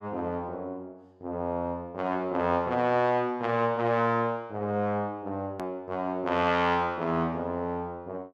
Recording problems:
hard cut with a click; at 5.5 s

